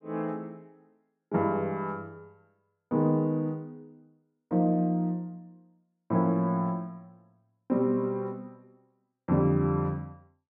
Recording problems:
none

